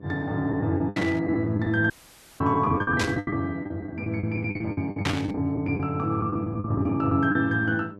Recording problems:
electrical hum; 50 Hz, harmonics up to 1.1 kHz, SNR 19 dB
lost packets; 14% of the sound replaced, filled with the last packet
static burst; at 1 s, at 3 s and at 5 s; peak +2 dB vs average level
audio cutting out; at 2 s for 0.5 s

